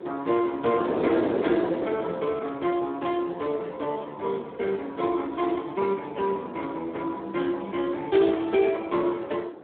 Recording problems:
telephone audio; 280 Hz to 3.6 kHz, Speex
wind noise; below 590 Hz, SNR 8 dB

